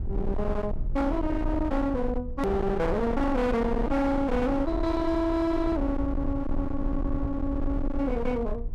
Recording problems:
distorted audio; hard clipping, signal-to-distortion ratio 7 dB
low-frequency rumble; below 200 Hz, SNR 5 dB
hard cut with a click; at 2.5 s

